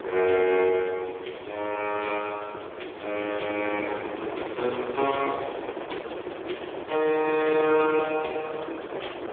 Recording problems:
phone line; 280 Hz to 2.9 kHz, AMR-NB
wind noise; below 860 Hz, SNR 9 dB

